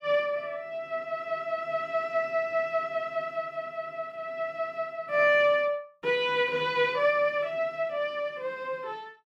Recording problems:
none

